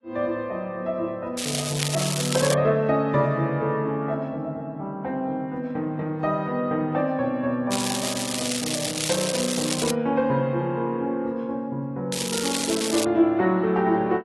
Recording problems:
codec artefacts; AAC, log-spectral distance 5 dB
crackling; from 1.5 to 2.5 s, from 7.5 to 10 s and at 12 s; loose cable, SNR 3 dB

